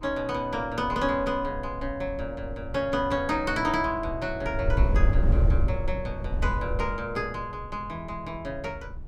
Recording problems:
wind on the microphone; below 80 Hz, SNR 1 dB

